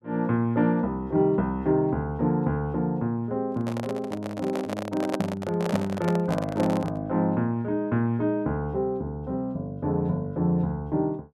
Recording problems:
microphone handling noise; from 3.5 to 7 s; peak +2 dB vs average level

